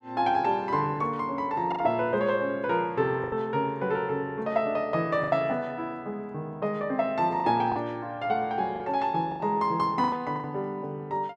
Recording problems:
packet loss; 5% of the sound replaced, filled with the last packet

